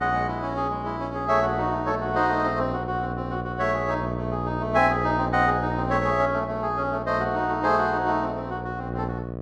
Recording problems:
electrical hum; 60 Hz, harmonics up to 1.2 kHz, SNR 7 dB

